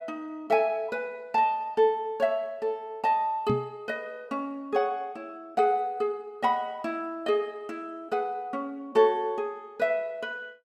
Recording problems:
knock on the microphone; at 3.5 s; peak +3 dB vs average level

